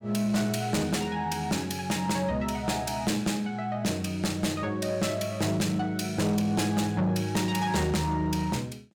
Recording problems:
distorted audio; soft clipping, signal-to-distortion ratio 10 dB

